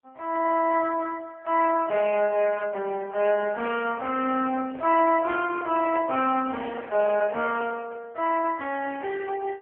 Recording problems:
telephone audio; 280 Hz to 3 kHz, AMR-NB
microphone handling noise; from 4.5 to 8 s; peak -9 dB vs average level

